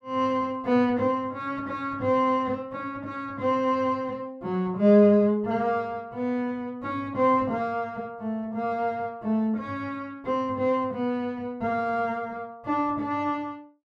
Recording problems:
none

